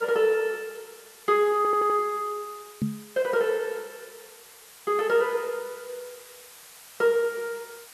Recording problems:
hiss; SNR 21 dB
stutter; at 1.5 s
knock on the microphone; at 3 s; peak +2 dB vs average level

